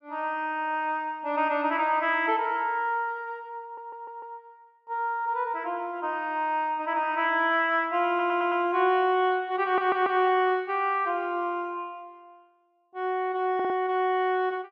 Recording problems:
audio stuttering; 4 times, first at 3.5 s

